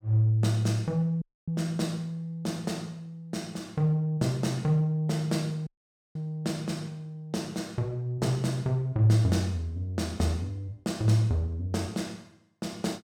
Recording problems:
audio cutting out; at 1 s and at 5.5 s

